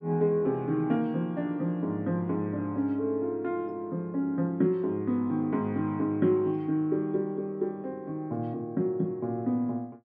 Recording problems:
none

